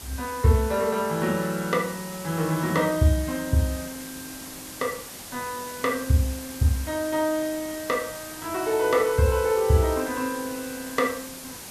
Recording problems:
hiss; slope -2 dB per octave, SNR 12 dB

